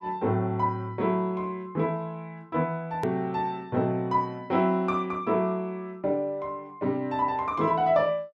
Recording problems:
edit click; at 3 s

